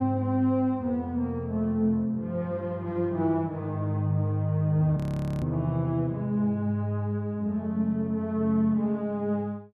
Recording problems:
audio freezing; at 5 s

